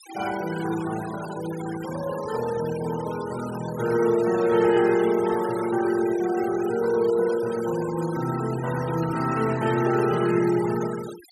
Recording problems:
denoising artefacts; signal-to-artefact ratio 15 dB

